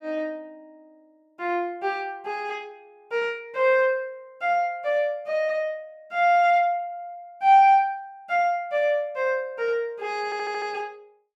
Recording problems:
stutter; at 10 s

